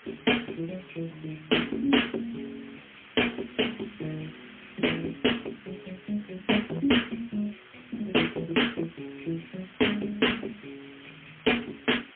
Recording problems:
phone line; 260 Hz to 3.3 kHz, AMR-NB, then MP3
distortion; hard clipping, uneven, signal-to-distortion ratio 17 dB
background hiss; SNR 20 dB

